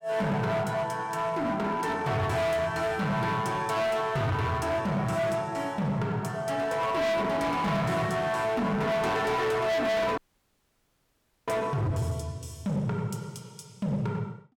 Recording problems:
distorted audio; hard clipping, uneven, signal-to-distortion ratio 7 dB
dropout; at 10 s for 1.5 s

